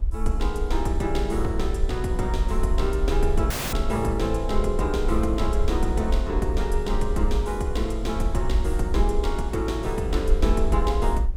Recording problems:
low-frequency rumble; below 54 Hz, SNR 2 dB
wind on the microphone; below 240 Hz, SNR 18 dB
audio cutting out; at 3.5 s

